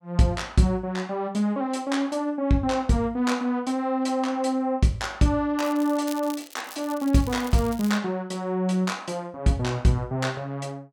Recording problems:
crackle; from 5.5 to 8 s; loose cable, SNR 17 dB

